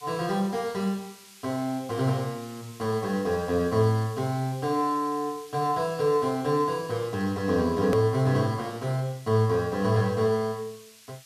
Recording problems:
background hiss; slope +4 dB per octave, SNR 22 dB
edit click; at 8 s

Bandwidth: 14.5 kHz